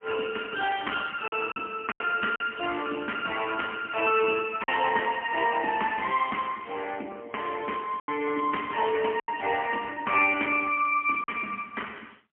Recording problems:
phone line; 260 Hz to 3.1 kHz, AMR-NB, then MP3
lost packets; 4% of the sound replaced, filled with silence

